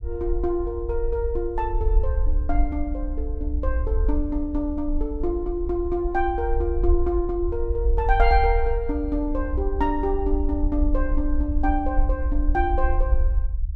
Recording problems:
rumble; below 56 Hz, SNR 1 dB

